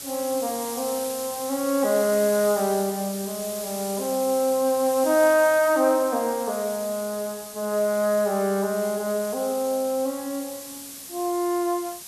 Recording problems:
hiss; SNR 11 dB

